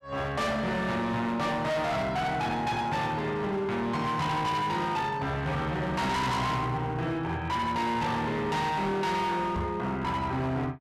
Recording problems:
distortion; hard clipping, signal-to-distortion ratio 7 dB
knock on the microphone; at 9.5 s; peak 0 dB vs average level

